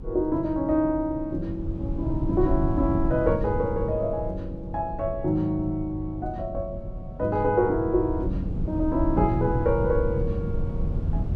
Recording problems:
rumble; below 130 Hz, SNR 6 dB

